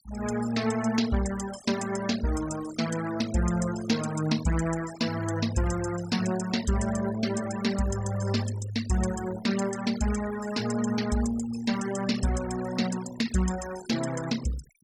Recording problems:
noise reduction artefacts; signal-to-artefact ratio 12 dB

